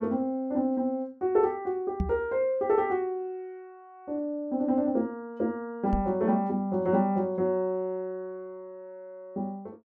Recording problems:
microphone thump; at 2 s and at 6 s; peak +3 dB vs average level

